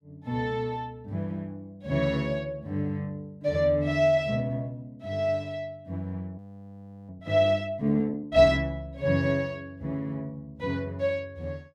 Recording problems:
audio freezing; at 6.5 s for 0.5 s

